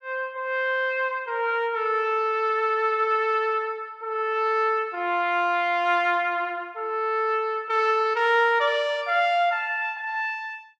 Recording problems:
none

